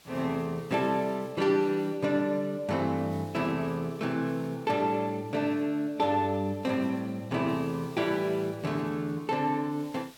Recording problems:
hiss; slope -1 dB per octave, SNR 26 dB

